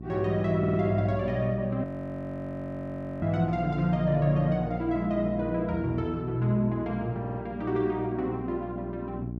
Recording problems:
hum; 60 Hz, harmonics up to 720 Hz, SNR 10 dB
stutter; at 0.5 s and at 7 s
audio freezing; at 2 s for 1.5 s

